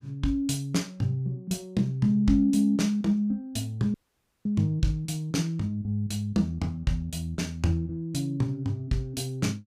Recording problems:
audio cutting out; at 4 s for 0.5 s

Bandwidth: 15.5 kHz